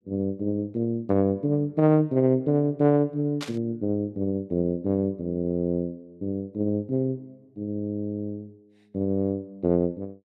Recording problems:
burst of static; at 3.5 s; peak -5 dB vs average level

